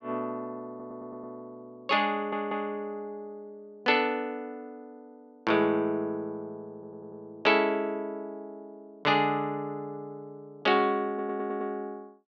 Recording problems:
audio stuttering; 4 times, first at 0.5 s

